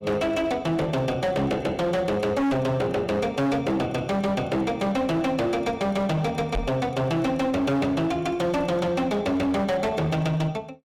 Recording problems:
distorted audio; hard clipping, signal-to-distortion ratio 8 dB
microphone thump; at 6.5 s; peak -1 dB vs average level

